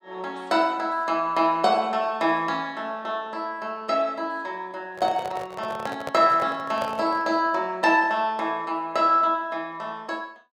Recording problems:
handling noise; from 5 to 7.5 s; peak -3 dB vs average level

